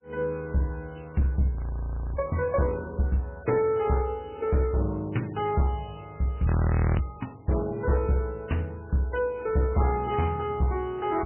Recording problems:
lossy compression; MP3, log-spectral distance 3 dB, nothing above 2.7 kHz
distorted audio; hard clipping, uneven, signal-to-distortion ratio 11 dB
audio freezing; at 1.5 s for 0.5 s and at 6.5 s for 0.5 s

